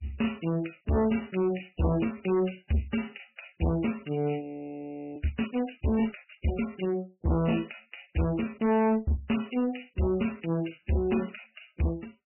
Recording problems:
codec artefacts; MP3, log-spectral distance 8 dB, nothing above 2.9 kHz
distorted audio; hard clipping, signal-to-distortion ratio 7 dB
frozen audio; at 4.5 s for 0.5 s

